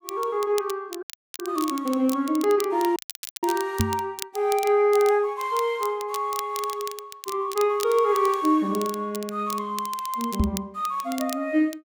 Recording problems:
crackle; vinyl, SNR 13 dB
audio cutting out; at 1 s and at 3 s
microphone bump; at 4 s and at 10 s; peak +6 dB vs average level

